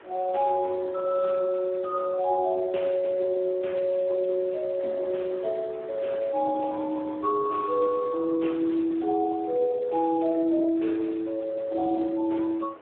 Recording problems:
phone line; 240 Hz to 3.3 kHz, Speex
hiss; SNR 27 dB
wind noise; below 790 Hz, SNR 22 dB

